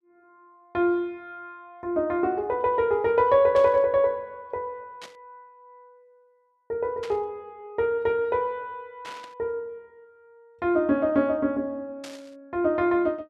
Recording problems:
static burst; 5 times, first at 3.5 s; peak -11 dB vs average level

